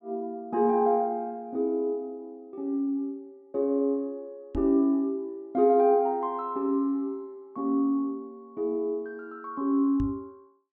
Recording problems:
microphone bump; at 4.5 s and at 10 s; peak -3 dB vs average level

